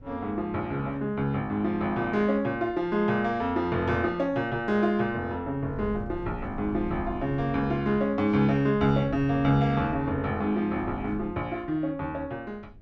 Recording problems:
wind on the microphone; below 160 Hz, SNR 17 dB

